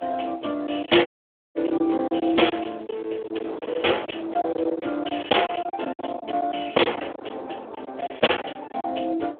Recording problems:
phone line; 260 Hz to 3.4 kHz, Speex
wind on the microphone; below 810 Hz, SNR 17 dB
lost packets; 12% of the sound replaced, filled with silence
crackle; from 1 to 4 s; loose cable, SNR 29 dB
audio cutting out; at 1 s

